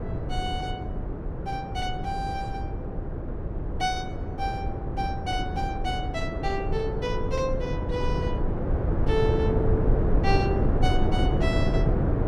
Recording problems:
wind noise; below 260 Hz, SNR -3 dB

